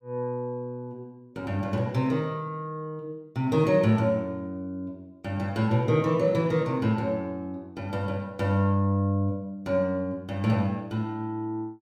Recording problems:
none

